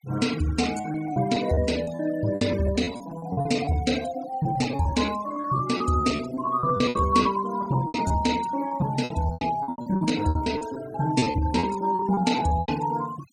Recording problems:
denoising artefacts; signal-to-artefact ratio 15 dB
packet loss; 18% of the sound replaced, filled with repeated pitch periods

